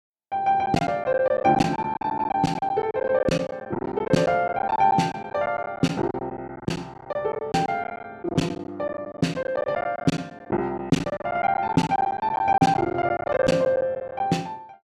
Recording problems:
lost packets; 16% of the sound replaced, filled with silence

